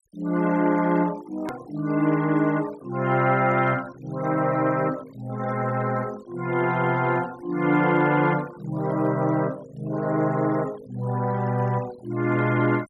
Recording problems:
denoising artefacts; signal-to-artefact ratio 21 dB
edit click; at 1.5 s

